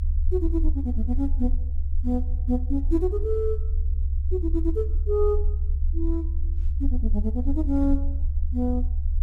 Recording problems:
rumble; below 70 Hz, SNR -1 dB

